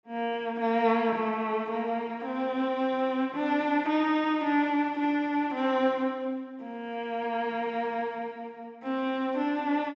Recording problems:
treble missing; nothing above 8 kHz

